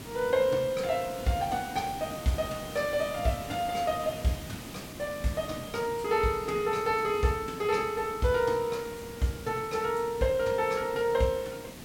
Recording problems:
background hiss; SNR 13 dB

